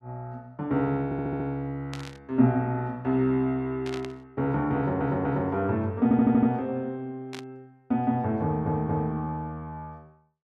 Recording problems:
audio stuttering; 4 times, first at 1 s
static burst; at 2 s, at 4 s and at 7.5 s; peak -8 dB vs average level

